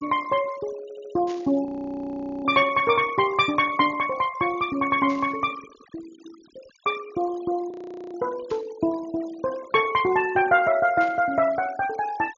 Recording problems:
treble cut off; nothing above 7.1 kHz
noise reduction artefacts; signal-to-artefact ratio 19 dB
stutter; at 1 s
burst of static; 4 times, first at 1.5 s; peak -14 dB vs average level
audio freezing; at 1.5 s for 1 s and at 7.5 s

